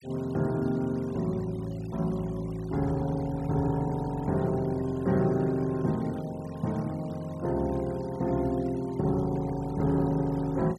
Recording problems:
noise reduction artefacts; signal-to-artefact ratio 23 dB

